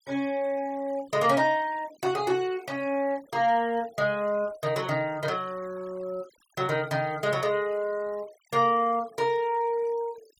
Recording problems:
noise reduction artefacts; signal-to-artefact ratio 24 dB

